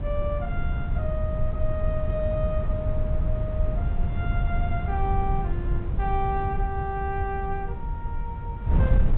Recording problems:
treble missing; nothing above 4 kHz
wind on the microphone; below 98 Hz, SNR -4 dB

